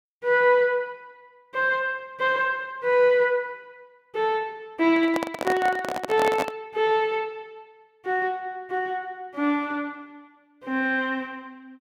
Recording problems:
handling noise; from 5 to 6.5 s; peak +1 dB vs average level

